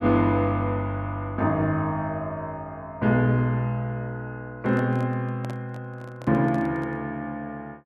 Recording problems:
handling noise; from 4.5 to 7 s; peak -8 dB vs average level

